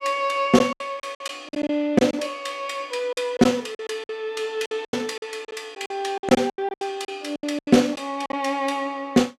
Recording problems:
packet loss; 13% of the sound replaced, filled with silence

